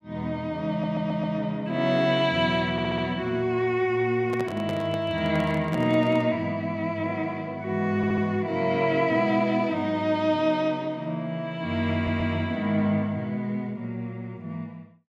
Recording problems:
stutter; 4 times, first at 0.5 s
handling noise; from 4.5 to 6.5 s; peak -5 dB vs average level

